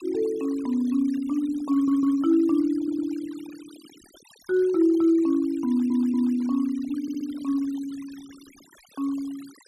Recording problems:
denoising artefacts; signal-to-artefact ratio 25 dB
audio stuttering; 4 times, first at 1.5 s

